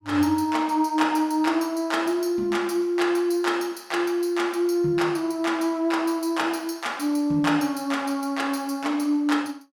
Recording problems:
none

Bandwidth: 17 kHz